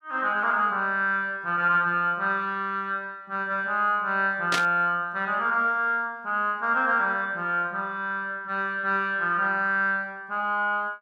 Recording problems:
burst of static; at 4.5 s; peak +3 dB vs average level

